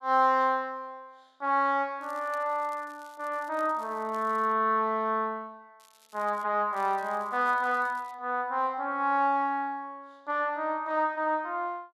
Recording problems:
crackle; from 2 to 4.5 s, at 6 s and from 6.5 to 8 s; loose cable, SNR 29 dB

